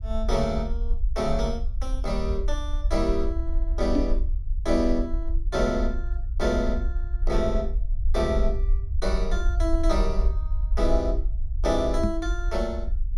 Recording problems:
low-frequency rumble; below 52 Hz, SNR 1 dB
microphone thump; at 4 s and at 12 s; peak +7 dB vs average level

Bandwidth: 15.5 kHz